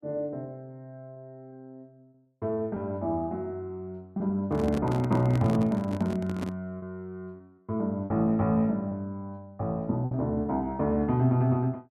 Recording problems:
packet loss; 3% of the sound replaced, filled with repeated pitch periods
handling noise; from 4.5 to 6.5 s; peak -2 dB vs average level

